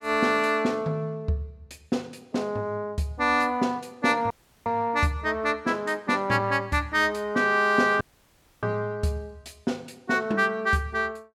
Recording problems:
dropout; at 4.5 s and at 8 s for 0.5 s

